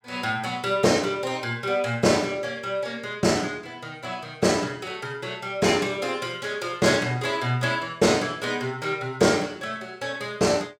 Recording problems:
none

